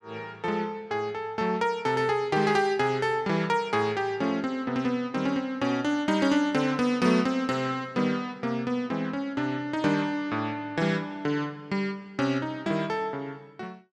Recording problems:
none

